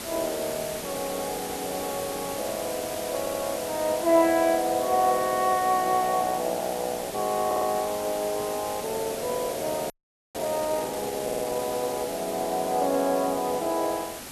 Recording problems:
hiss; slope -3 dB per octave, SNR 8 dB
audio stuttering; at 3 s, at 7.5 s and at 11 s
audio freezing; at 10 s

